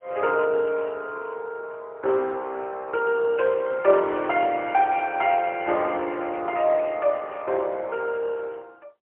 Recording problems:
telephone audio; 300 Hz to 3.2 kHz, AMR-NB, then MP3

